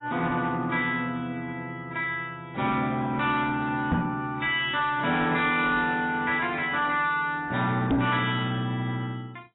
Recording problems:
lossy codec; AAC, log-spectral distance 3 dB, nothing above 3.3 kHz
distortion; soft clipping, signal-to-distortion ratio 11 dB
microphone bump; at 4 s and at 8 s; peak +5 dB vs average level

